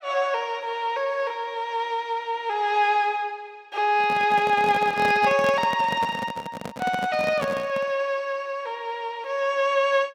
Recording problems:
microphone handling noise; from 4 to 8 s; peak -2 dB vs average level

